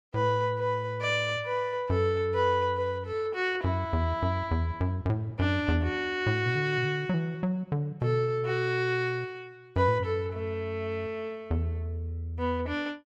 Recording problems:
none

